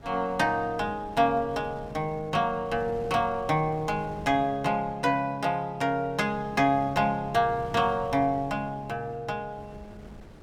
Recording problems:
wind on the microphone; below 380 Hz, SNR 19 dB

